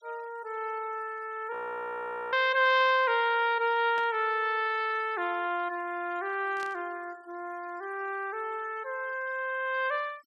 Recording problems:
noise reduction artefacts; signal-to-artefact ratio 27 dB
frozen audio; at 1.5 s for 1 s
static burst; at 4 s and at 6.5 s; peak -10 dB vs average level

